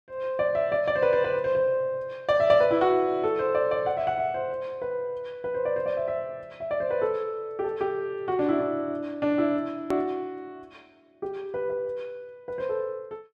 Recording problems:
click at an edit; at 10 s

